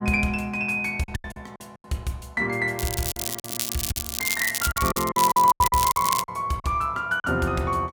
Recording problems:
lost packets; 11% of the sound replaced, filled with silence
crackle; from 3 to 6.5 s; loose cable, SNR 3 dB

